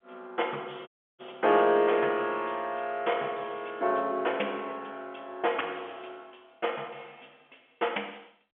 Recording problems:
phone line; 320 Hz to 3.4 kHz, G.711
audio cutting out; at 1 s

